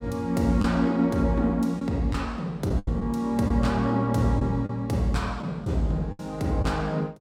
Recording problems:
packet loss; 5% of the sound replaced, filled with the last packet

